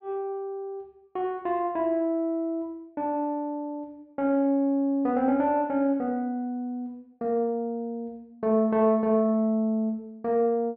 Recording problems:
treble cut off; nothing above 5.5 kHz

